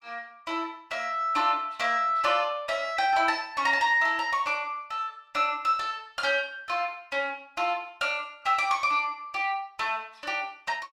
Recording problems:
none

